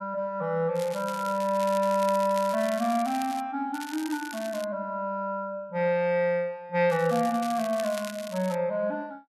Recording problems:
crackle; from 1 to 3.5 s, at 3.5 s and from 7 to 8.5 s; loose cable, SNR 15 dB

